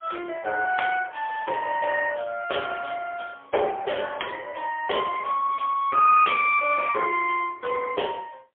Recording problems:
telephone audio; 370 Hz to 2.8 kHz, AMR-NB, then MP3

